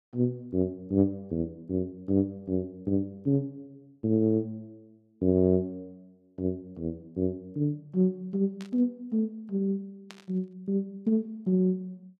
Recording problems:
static burst; at 8.5 s and at 10 s; peak -11 dB vs average level

